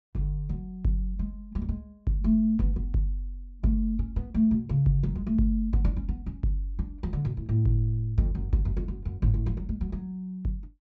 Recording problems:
low-pass filter; nothing above 8 kHz

